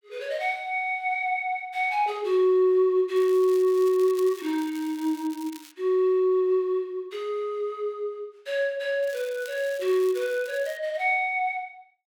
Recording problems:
crackle; from 3 to 5.5 s and from 9 to 11 s; loose cable, SNR 21 dB

